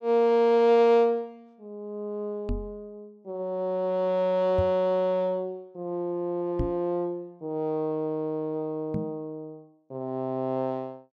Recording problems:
microphone bump; 4 times, first at 2.5 s; peak +1 dB vs average level

